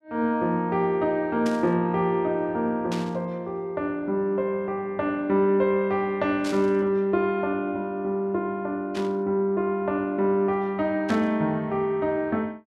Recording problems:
burst of static; 5 times, first at 1.5 s; peak -7 dB vs average level

